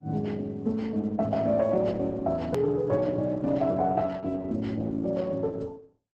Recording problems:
codec artefacts; Opus, log-spectral distance 2 dB, nothing above 13.3 kHz
hard cut with a click; at 2.5 s

